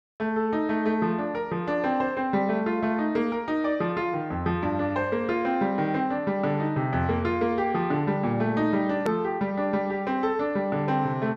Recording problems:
edit click; at 9 s

